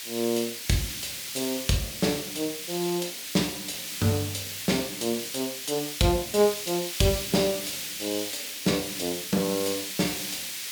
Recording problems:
background hiss; SNR 4 dB

